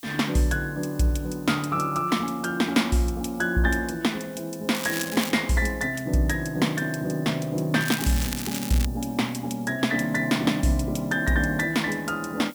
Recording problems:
background hiss; SNR 22 dB
crackle; at 5 s and from 8 to 9 s; loose cable, SNR 8 dB

